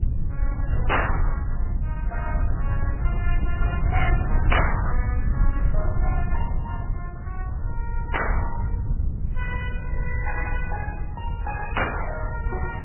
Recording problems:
lossy compression; Opus, then MP3, log-spectral distance 3 dB, nothing above 2.7 kHz
low-frequency rumble; below 82 Hz, SNR -6 dB

